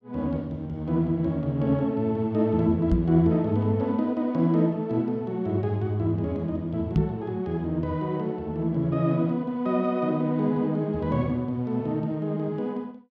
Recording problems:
microphone bump; at 3 s and at 7 s; peak +7 dB vs average level

